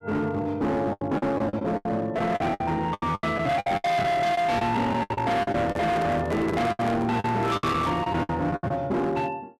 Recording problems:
distortion; hard clipping, signal-to-distortion ratio 8 dB
lost packets; 14% of the sound replaced, filled with the last packet
microphone handling noise; from 5.5 to 8 s; peak -3 dB vs average level

